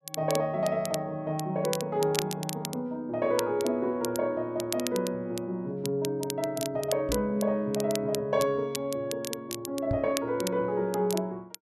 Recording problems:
crackling; vinyl, SNR 10 dB
microphone thump; at 7 s and at 10 s; peak +2 dB vs average level

